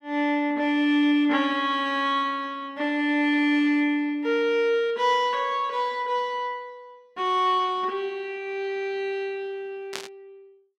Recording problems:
burst of static; at 10 s; peak -3 dB vs average level

